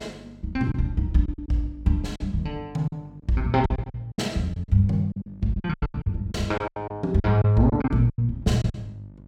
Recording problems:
hum; 50 Hz, harmonics up to 650 Hz, SNR 23 dB
packet loss; 13% of the sound replaced, filled with silence

